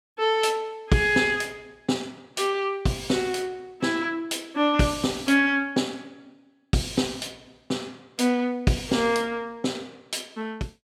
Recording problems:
none

